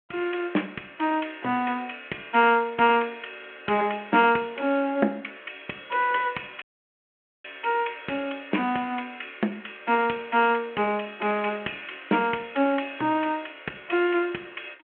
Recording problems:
telephone audio; 220 Hz to 3.2 kHz, G.726
dropout; at 6.5 s for 1 s

